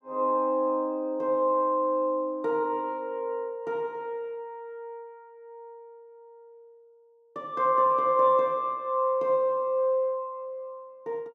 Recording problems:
none

